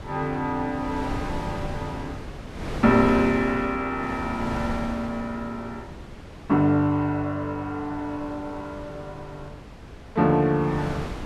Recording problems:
wind noise; below 600 Hz, SNR 11 dB

